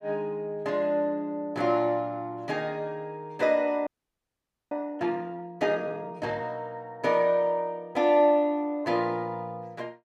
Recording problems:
audio freezing; at 4 s for 1 s

